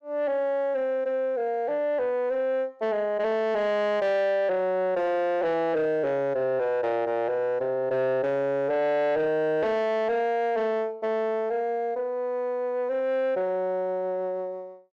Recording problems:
distorted audio; soft clipping, signal-to-distortion ratio 11 dB

